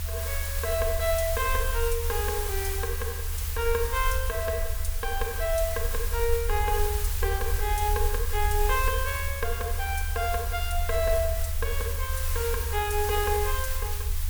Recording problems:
hiss; SNR 4 dB
rumble; below 76 Hz, SNR 2 dB

